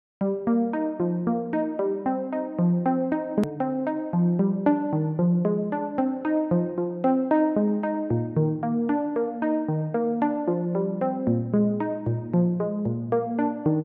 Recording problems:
click at an edit; at 3.5 s

